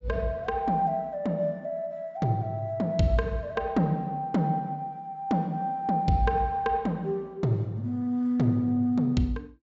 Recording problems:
low-pass filter; nothing above 8 kHz

